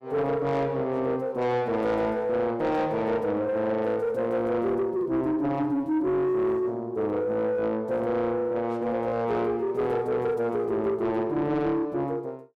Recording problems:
distorted audio; soft clipping, signal-to-distortion ratio 11 dB

